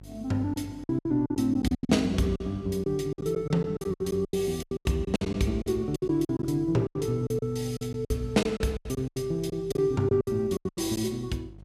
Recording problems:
electrical hum; 50 Hz, harmonics up to 550 Hz, SNR 20 dB
packet loss; 17% of the sound replaced, filled with silence

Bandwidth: 14.5 kHz